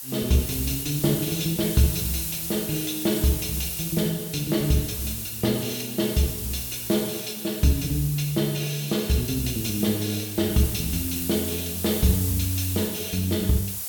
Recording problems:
hiss; SNR 4 dB

